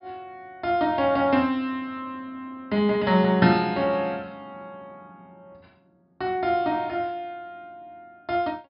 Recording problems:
low-pass filter; nothing above 5.5 kHz

